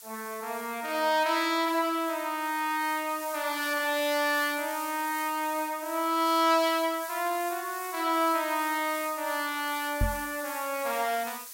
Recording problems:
background hiss; slope +3 dB per octave, SNR 12 dB
microphone bump; at 10 s; peak +3 dB vs average level

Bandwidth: 16 kHz